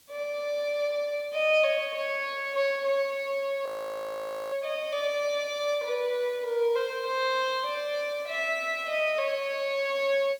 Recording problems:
background hiss; SNR 27 dB
frozen audio; at 3.5 s for 1 s

